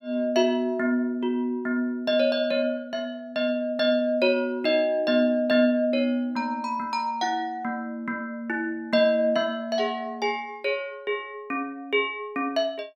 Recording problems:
none

